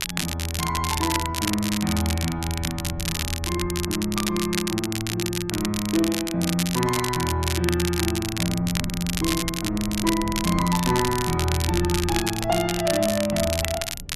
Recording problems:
wind noise; below 150 Hz, SNR 14 dB
crackle; vinyl, SNR 4 dB

